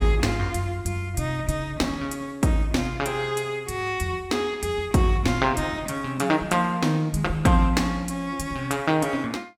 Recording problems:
none

